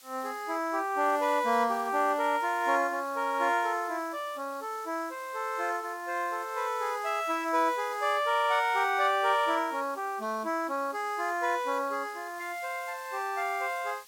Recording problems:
hiss; slope +2 dB per octave, SNR 22 dB

